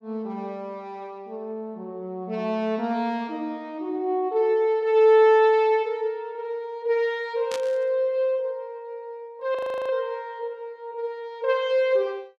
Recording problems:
burst of static; at 7.5 s; peak -5 dB vs average level
frozen audio; at 9.5 s

